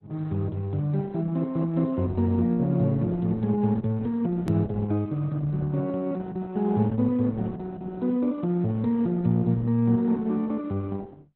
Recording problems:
lossy codec; Opus, log-spectral distance 2 dB, nothing above 13.1 kHz
click at an edit; at 4.5 s

